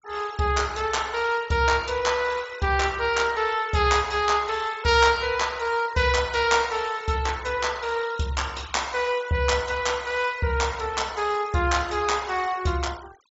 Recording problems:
treble missing; nothing above 8 kHz
noise reduction artefacts; signal-to-artefact ratio 20 dB

